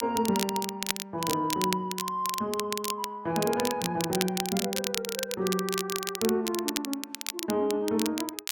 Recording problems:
crackle; vinyl, SNR 3 dB

